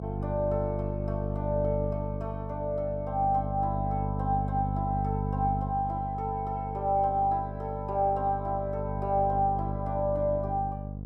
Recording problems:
hum; 50 Hz, harmonics up to 550 Hz, SNR 4 dB

